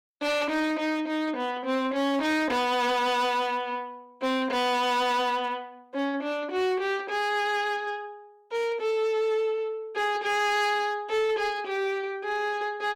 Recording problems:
distortion; hard clipping, signal-to-distortion ratio 10 dB

